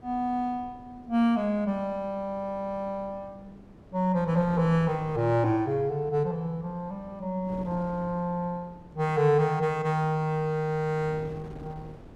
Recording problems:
wind on the microphone; below 400 Hz, SNR 20 dB

